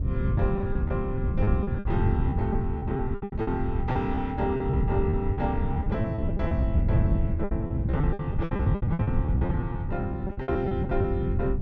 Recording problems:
wind on the microphone; below 140 Hz, SNR -3 dB
packet loss; 16% of the sound replaced, filled with repeated pitch periods

